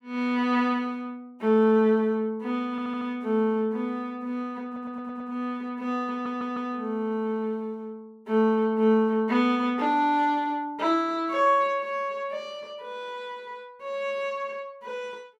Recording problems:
audio stuttering; at 2.5 s, at 4.5 s and at 6 s

